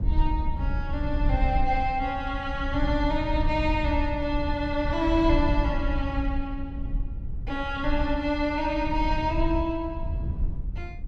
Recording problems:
low-frequency rumble; below 72 Hz, SNR 3 dB

